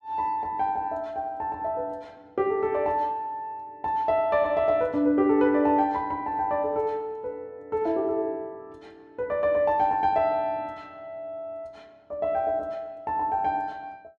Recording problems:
none

